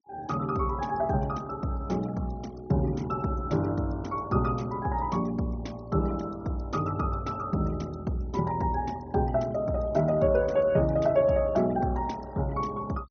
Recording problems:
treble missing; nothing above 6.3 kHz
noise reduction artefacts; signal-to-artefact ratio 24 dB

